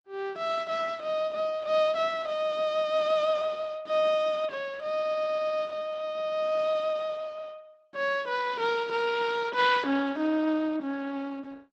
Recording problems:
codec artefacts; Opus, log-spectral distance 3 dB
stutter; at 5 s

